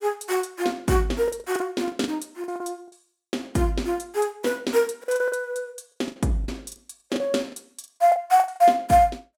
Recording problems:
packet loss; 10% of the sound replaced, filled with the last packet

